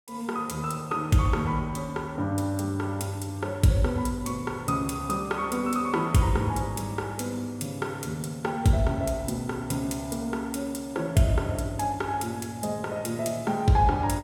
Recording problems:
none

